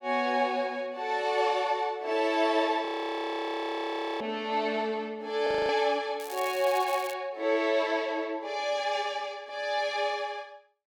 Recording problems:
audio freezing; at 3 s for 1.5 s and at 5.5 s
crackling; at 6 s; loose cable, SNR 15 dB

